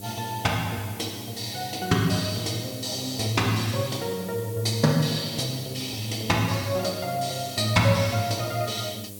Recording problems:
mains hum; 50 Hz, harmonics up to 700 Hz, SNR 18 dB
background hiss; SNR 15 dB

